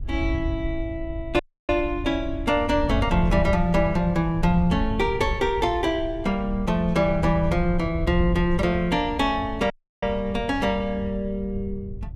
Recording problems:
wind on the microphone; below 90 Hz, SNR 8 dB
audio cutting out; at 1.5 s and at 9.5 s

